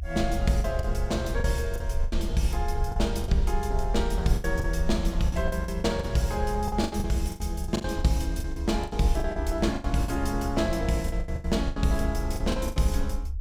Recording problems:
rumble; below 70 Hz, SNR 4 dB
packet loss; 14% of the sound replaced, filled with the last packet

